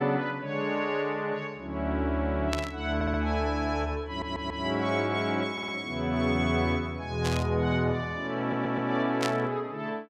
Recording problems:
burst of static; at 2.5 s, at 7 s and at 9 s; peak +1 dB vs average level
audio stuttering; 4 times, first at 3 s

